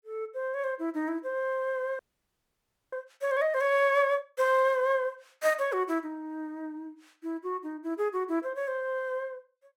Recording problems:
frozen audio; at 2 s for 1 s

